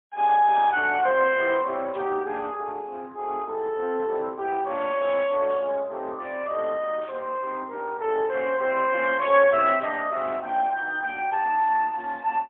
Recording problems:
telephone audio; 240 Hz to 3.7 kHz, AMR-NB, then MP3
static burst; 4 times, first at 2 s; peak -18 dB vs average level

